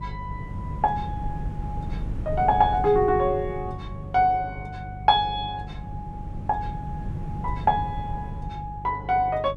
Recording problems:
hum; 50 Hz, harmonics up to 550 Hz, SNR 14 dB
wind on the microphone; below 160 Hz, SNR 11 dB

